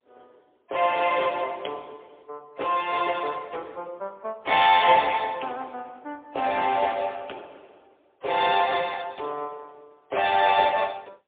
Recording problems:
telephone audio; 340 Hz to 3.5 kHz, AMR-NB, then MP3

